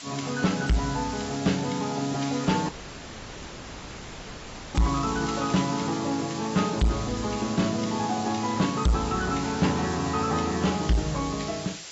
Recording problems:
lossy compression; AAC, log-spectral distance 14 dB, nothing above 7.8 kHz
distortion; soft clipping, signal-to-distortion ratio 11 dB
background hiss; slope +1 dB per octave, SNR 11 dB
audio cutting out; at 2.5 s for 2 s
crackle; at 5 s; loose cable, SNR 17 dB

